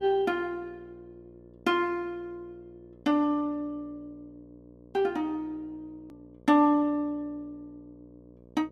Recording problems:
hum; 60 Hz, harmonics up to 1 kHz, SNR 25 dB
hard cut with a click; at 6 s

